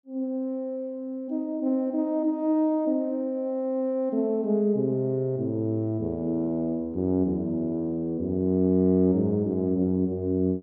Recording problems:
none

